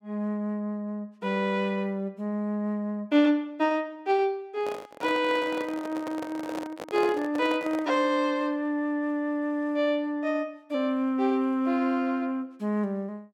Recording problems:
microphone handling noise; from 4.5 to 8 s; peak -4 dB vs average level

